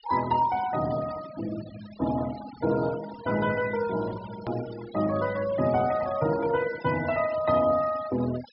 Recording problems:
low-pass filter; nothing above 5.4 kHz
denoising artefacts; signal-to-artefact ratio 16 dB
hard cut with a click; at 4.5 s

